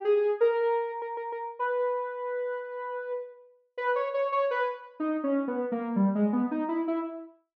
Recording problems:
audio stuttering; at 1 s

